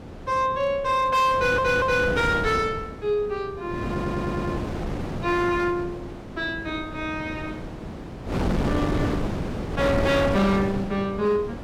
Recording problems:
distortion; hard clipping, uneven, signal-to-distortion ratio 11 dB
wind noise; below 520 Hz, SNR 5 dB
audio stuttering; at 1.5 s and at 4 s

